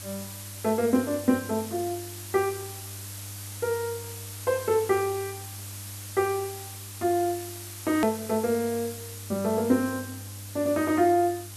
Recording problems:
mains hum; 50 Hz, harmonics up to 600 Hz, SNR 16 dB
hiss; slope +1 dB per octave, SNR 12 dB
edit click; at 8 s

